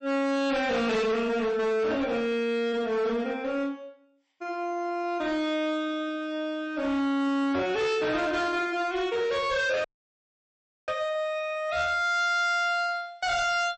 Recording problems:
codec artefacts; MP3, log-spectral distance 2 dB, nothing above 6.9 kHz
distorted audio; hard clipping, signal-to-distortion ratio 7 dB
dropout; at 10 s for 1 s

